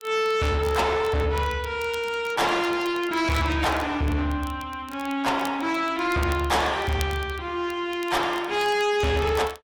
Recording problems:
codec artefacts; AAC, log-spectral distance 2 dB, nothing above 14.7 kHz
distortion; soft clipping, signal-to-distortion ratio 8 dB
crackle; vinyl, SNR 21 dB

